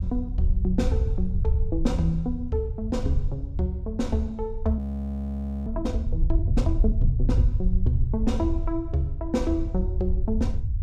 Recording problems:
rumble; below 72 Hz, SNR 1 dB
frozen audio; at 5 s for 1 s

